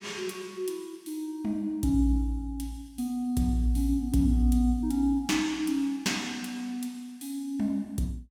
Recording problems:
none

